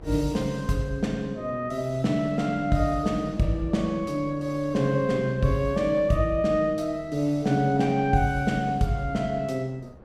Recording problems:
wind noise; below 480 Hz, SNR 21 dB

